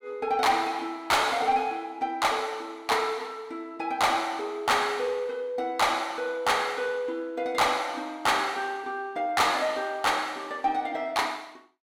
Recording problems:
distorted audio; soft clipping, signal-to-distortion ratio 10 dB

